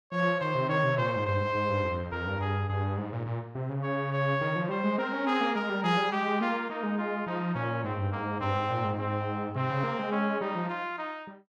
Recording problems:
none

